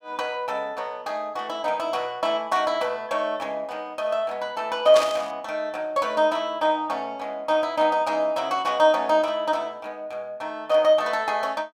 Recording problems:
static burst; at 5 s; peak 0 dB vs average level

